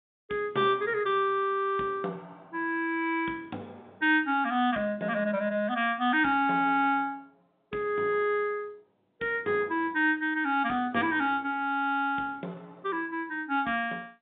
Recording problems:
phone line; 170 Hz to 3.7 kHz, G.711

